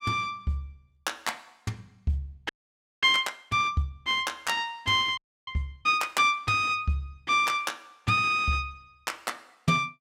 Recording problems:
audio freezing; at 2.5 s for 0.5 s and at 5 s

